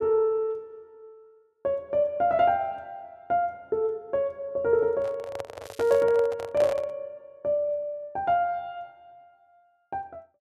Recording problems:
handling noise; from 5 to 7 s; peak -1 dB vs average level
crackling; at 5.5 s; loose cable, SNR 23 dB

